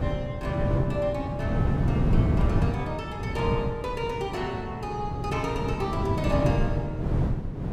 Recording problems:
wind noise; below 210 Hz, SNR -3 dB

